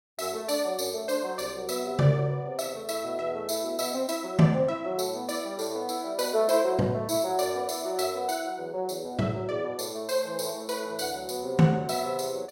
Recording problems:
none

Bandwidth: 16.5 kHz